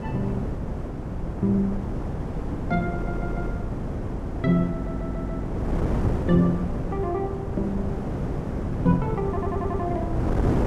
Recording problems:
hum; 50 Hz, harmonics up to 800 Hz, SNR 14 dB
wind on the microphone; below 330 Hz, SNR 2 dB
audio stuttering; at 3 s, at 4.5 s and at 9.5 s

